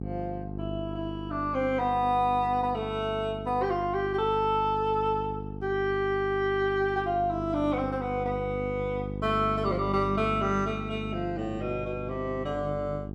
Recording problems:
electrical hum; 50 Hz, harmonics up to 800 Hz, SNR 8 dB

